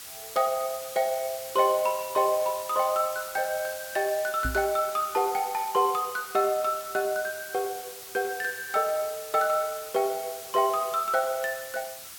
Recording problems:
hiss; slope +2 dB per octave, SNR 12 dB
microphone thump; at 4.5 s; peak -1 dB vs average level

